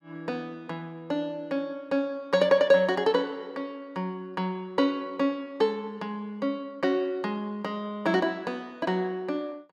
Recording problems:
none

